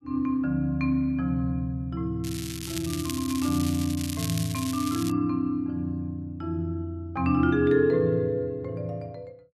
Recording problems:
crackle; from 2 to 5 s; loose cable, SNR 9 dB

